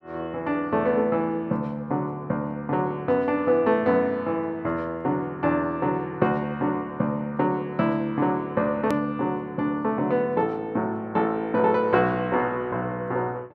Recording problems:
edit click; at 9 s

